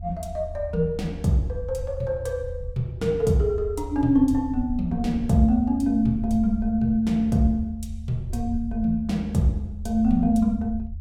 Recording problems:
low-frequency rumble; below 78 Hz, SNR 11 dB

